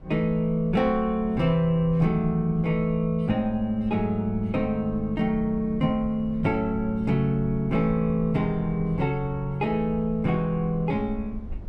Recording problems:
low-frequency rumble; below 86 Hz, SNR 16 dB

